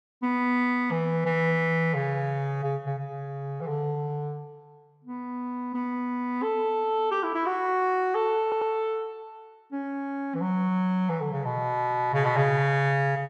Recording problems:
audio stuttering; at 8.5 s

